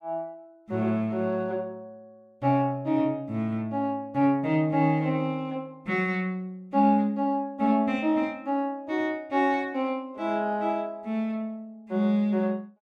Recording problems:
none

